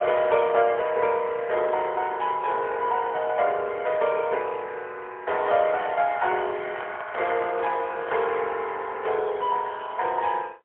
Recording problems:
telephone audio; 340 Hz to 3.3 kHz, AMR-NB, then MP3
handling noise; from 5.5 to 8.5 s; peak -5 dB vs average level

